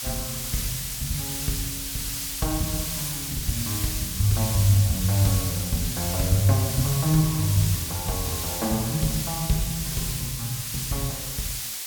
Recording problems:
hiss; slope +3 dB per octave, SNR 2 dB

